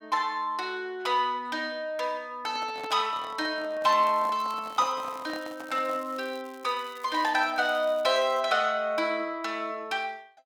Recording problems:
microphone handling noise; from 2.5 to 6 s; peak -8 dB vs average level
crackle; from 4 to 8.5 s; loose cable, SNR 25 dB

